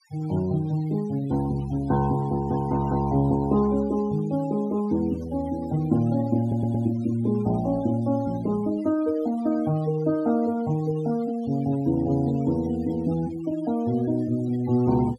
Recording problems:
denoising artefacts; signal-to-artefact ratio 21 dB
audio stuttering; at 6.5 s

